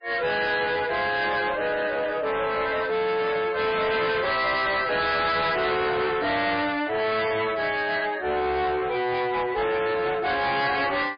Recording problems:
lossy codec; MP3, log-spectral distance 4 dB, nothing above 4.5 kHz
distorted audio; soft clipping, signal-to-distortion ratio 7 dB

